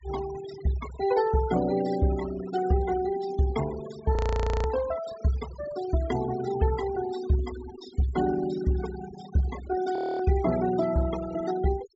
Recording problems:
treble cut off; nothing above 8 kHz
noise reduction artefacts; signal-to-artefact ratio 13 dB
frozen audio; at 4 s and at 10 s

